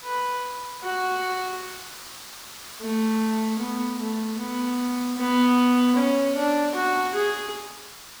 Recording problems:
hiss; SNR 13 dB

